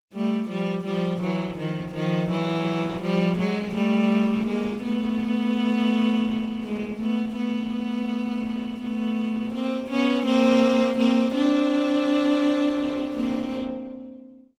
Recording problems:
lossy codec; Opus, log-spectral distance 3 dB, nothing above 19 kHz

